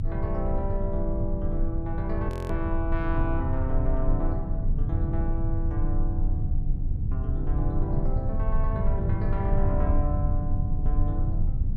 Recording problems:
low-frequency rumble; below 88 Hz, strongest tone 24 Hz, SNR -5 dB
audio freezing; at 2.5 s

